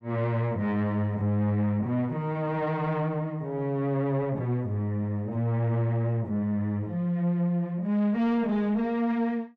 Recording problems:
distorted audio; soft clipping, signal-to-distortion ratio 11 dB

